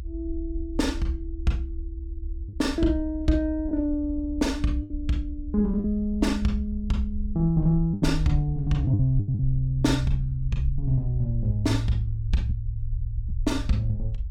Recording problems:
rumble; below 68 Hz, SNR 7 dB
lost packets; 3% of the sound replaced, filled with the last packet

